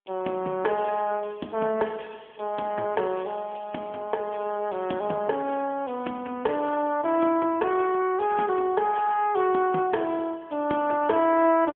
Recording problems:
phone line; 240 Hz to 2.8 kHz, AMR-NB

